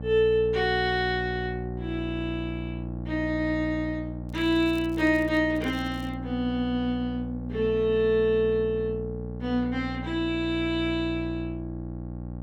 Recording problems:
hum; 60 Hz, harmonics up to 840 Hz, SNR 9 dB
crackling; from 4.5 to 5.5 s and at 5.5 s; loose cable, SNR 26 dB

